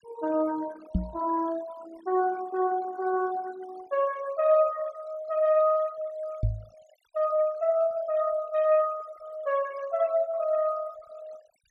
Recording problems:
noise reduction artefacts; signal-to-artefact ratio 22 dB
microphone bump; at 1 s and at 6.5 s; peak +4 dB vs average level

